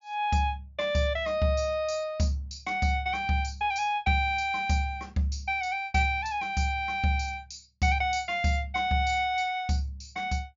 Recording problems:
treble cut off; nothing above 7.2 kHz

